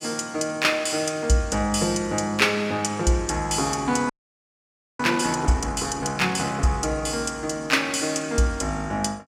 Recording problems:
audio freezing; at 4 s for 1 s

